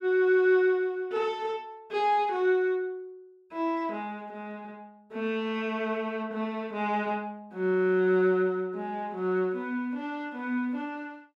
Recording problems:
none

